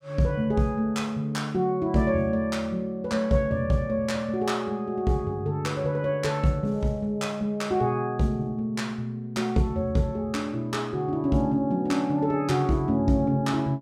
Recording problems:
none

